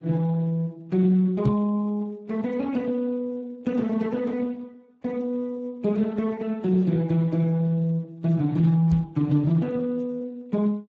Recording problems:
lossy codec; Vorbis, then Speex, log-spectral distance 2 dB
knock on the microphone; at 1.5 s and at 9 s; peak +4 dB vs average level

